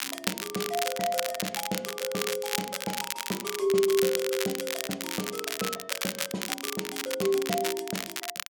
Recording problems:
crackle; vinyl, SNR 2 dB

